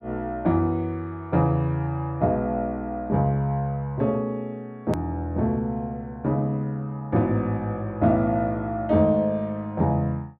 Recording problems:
hard cut with a click; at 5 s

